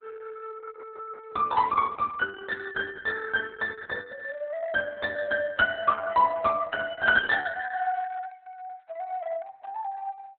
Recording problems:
lossy compression; Opus, log-spectral distance 3 dB, nothing above 3.6 kHz

